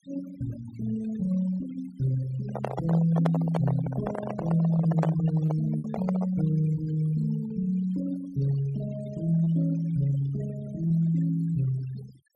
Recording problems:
denoising artefacts; signal-to-artefact ratio 18 dB
lost packets; 2% of the sound replaced, filled with repeated pitch periods
handling noise; from 2.5 to 6.5 s; peak +2 dB vs average level

